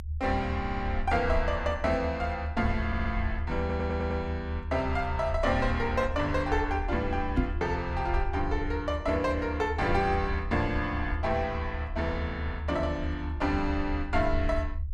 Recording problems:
low-frequency rumble; below 78 Hz, SNR 5 dB
audio stuttering; at 0.5 s, at 3 s and at 3.5 s
microphone bump; at 7.5 s; peak +7 dB vs average level

